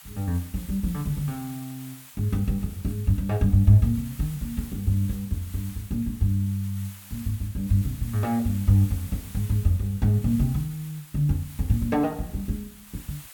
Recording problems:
hiss; SNR 18 dB

